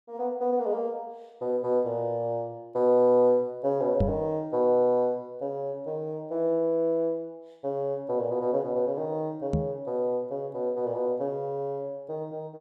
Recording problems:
microphone thump; at 4 s and at 9.5 s; peak +5 dB vs average level

